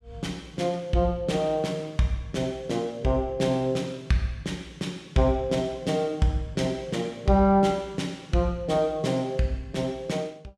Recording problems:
none

